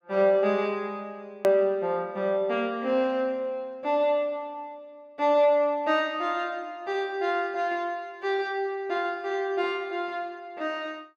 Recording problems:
edit click; at 1.5 s

